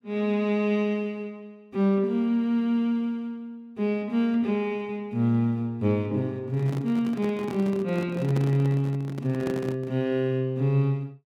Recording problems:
microphone handling noise; from 6.5 to 10 s; peak -2 dB vs average level

